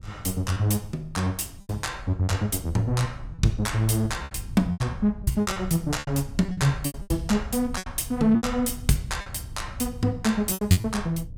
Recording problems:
wind noise; below 110 Hz, SNR 14 dB
packet loss; 10% of the sound replaced, filled with repeated pitch periods

